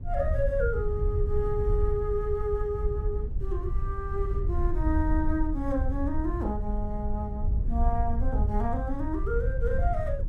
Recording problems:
wind on the microphone; below 74 Hz, SNR -1 dB

